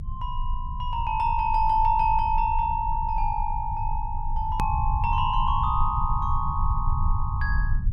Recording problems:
rumble; below 76 Hz, strongest tone 24 Hz, SNR 4 dB
click at an edit; at 4.5 s

